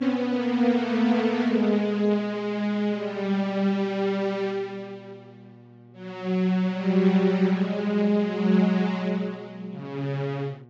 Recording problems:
treble cut off; nothing above 8 kHz
hum; 60 Hz, harmonics up to 1.1 kHz, SNR 26 dB

